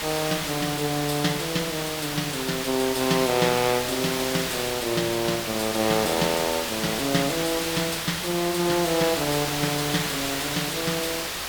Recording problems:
hiss; slope -1 dB per octave, SNR 2 dB

